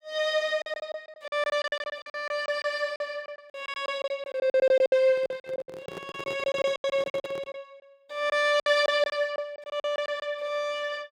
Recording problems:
lost packets; 17% of the sound replaced, filled with silence
microphone handling noise; from 5 to 7.5 s; peak -8 dB vs average level

